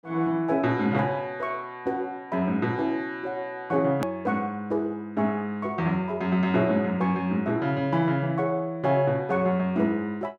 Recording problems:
hard cut with a click; at 4 s

